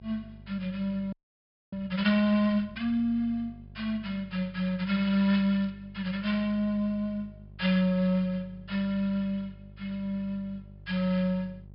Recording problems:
treble missing; nothing above 5.5 kHz
mains hum; 50 Hz, harmonics up to 600 Hz, SNR 21 dB
audio freezing; at 1 s for 0.5 s
crackle; at 5 s; loose cable, SNR 27 dB

